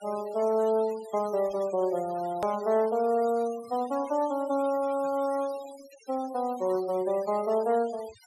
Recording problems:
noise reduction artefacts; signal-to-artefact ratio 21 dB
hard cut with a click; at 2.5 s

